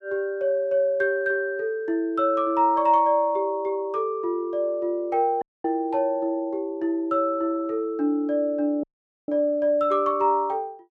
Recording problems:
audio cutting out; at 5.5 s and at 9 s

